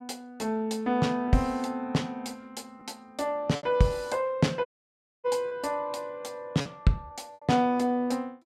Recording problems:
packet loss; 4% of the sound replaced, filled with repeated pitch periods
dropout; at 4.5 s for 0.5 s

